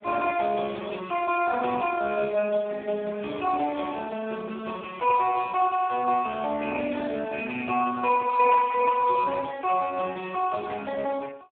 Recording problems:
phone line; 320 Hz to 2.4 kHz, Speex

